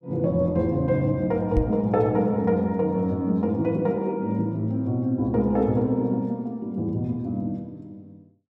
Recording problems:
knock on the microphone; at 1.5 s; peak +4 dB vs average level

